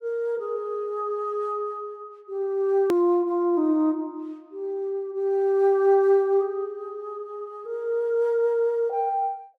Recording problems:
click at an edit; at 3 s

